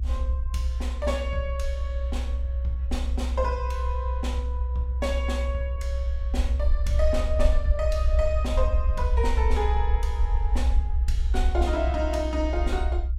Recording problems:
rumble; below 64 Hz, SNR -4 dB

